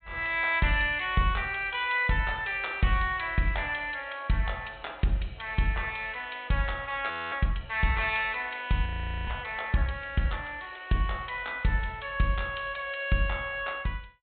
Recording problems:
low-pass filter; nothing above 4 kHz
audio freezing; at 7 s and at 9 s

